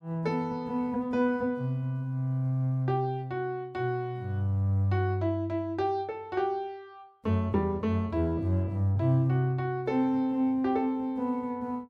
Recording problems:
none

